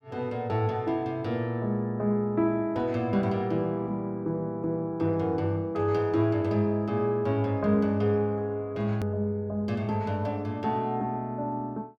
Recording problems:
hard cut with a click; at 9 s

